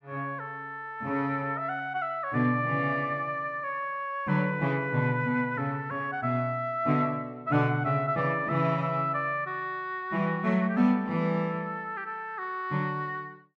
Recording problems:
none

